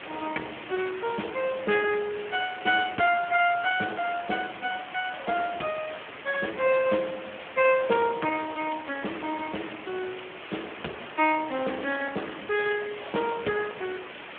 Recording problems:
phone line; 240 Hz to 3.2 kHz, Speex
background hiss; SNR 12 dB

